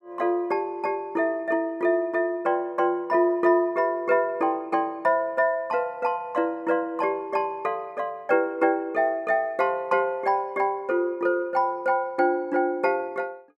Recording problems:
none

